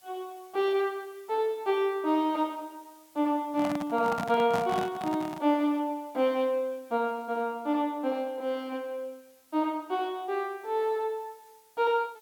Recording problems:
background hiss; slope 0 dB per octave, SNR 29 dB
handling noise; from 3.5 to 5.5 s; peak 0 dB vs average level

